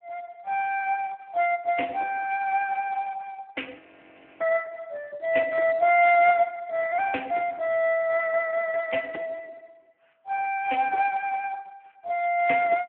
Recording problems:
phone line; 320 Hz to 3.1 kHz, Speex
audio freezing; at 4 s for 0.5 s

